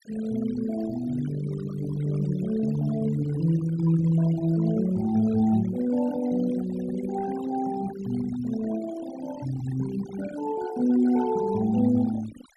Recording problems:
noise reduction artefacts; signal-to-artefact ratio 16 dB

